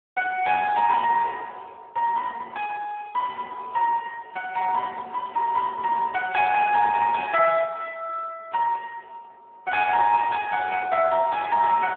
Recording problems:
phone line; 300 Hz to 3.4 kHz, Speex

